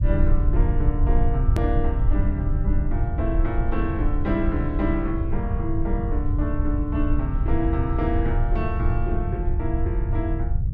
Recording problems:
electrical hum; 60 Hz, harmonics up to 780 Hz, SNR 25 dB
low-frequency rumble; below 84 Hz, SNR -3 dB
hard cut with a click; at 1.5 s

